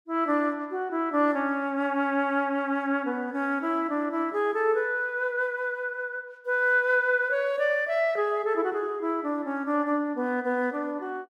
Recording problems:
none

